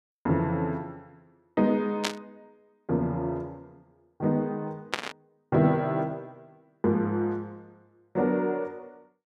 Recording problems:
burst of static; at 2 s and at 5 s; peak +4 dB vs average level

